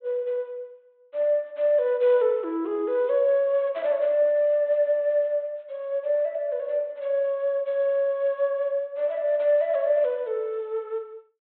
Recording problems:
treble cut off; nothing above 4 kHz

